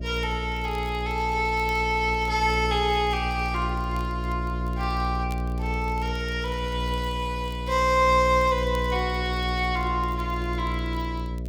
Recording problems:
electrical hum; 60 Hz, harmonics up to 660 Hz, SNR 5 dB
crackling; vinyl, SNR 28 dB

